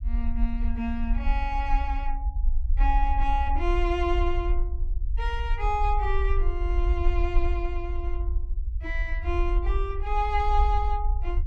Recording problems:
rumble; below 52 Hz, SNR -1 dB

